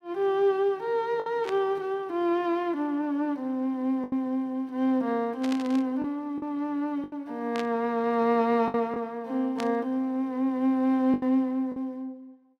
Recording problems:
lost packets; 4% of the sound replaced, filled with the last packet
static burst; 4 times, first at 1.5 s; peak -5 dB vs average level

